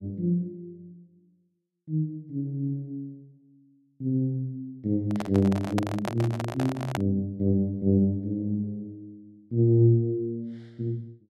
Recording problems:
handling noise; from 5 to 7 s; peak +1 dB vs average level

